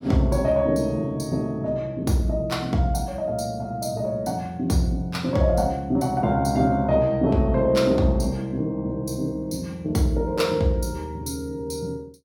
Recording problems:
none

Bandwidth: 18 kHz